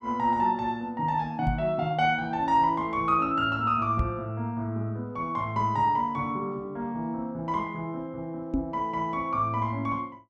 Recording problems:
microphone bump; at 1.5 s, at 4 s and at 8.5 s; peak +4 dB vs average level

